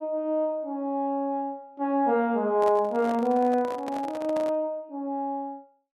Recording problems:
microphone handling noise; from 2.5 to 4.5 s; peak -6 dB vs average level

